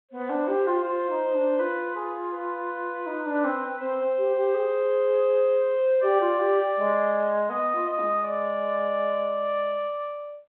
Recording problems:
telephone audio; 300 Hz to 3.7 kHz, G.726

